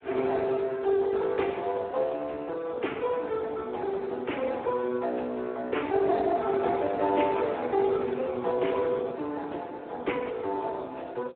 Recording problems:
telephone audio; 260 Hz to 3.3 kHz, Speex

